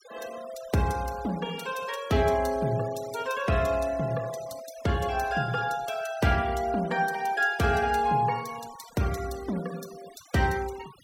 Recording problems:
denoising artefacts; signal-to-artefact ratio 19 dB

